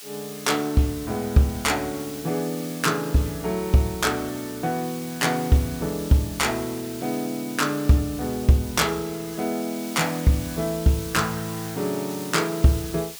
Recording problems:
background hiss; slope +3 dB per octave, SNR 13 dB

